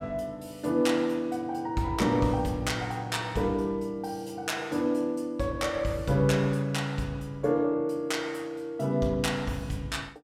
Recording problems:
none

